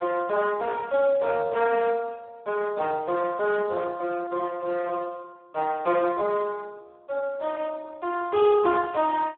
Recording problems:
phone line; 320 Hz to 2 kHz, Speex

